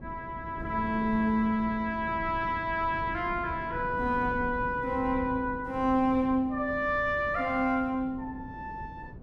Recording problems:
wind noise; below 270 Hz, SNR 14 dB

